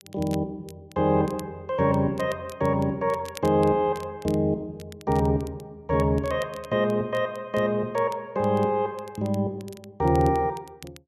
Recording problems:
crackling; vinyl, SNR 24 dB

